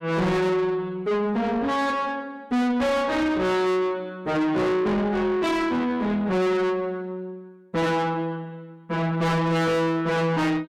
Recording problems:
distorted audio; soft clipping, signal-to-distortion ratio 6 dB

